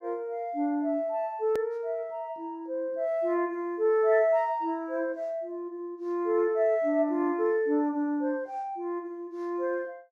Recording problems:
click at an edit; at 1.5 s

